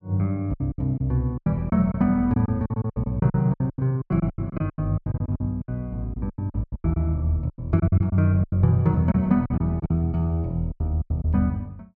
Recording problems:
lost packets; 18% of the sound replaced, filled with silence

